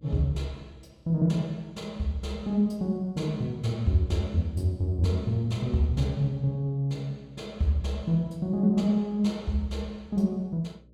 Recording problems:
electrical hum; 60 Hz, harmonics up to 600 Hz, SNR 28 dB

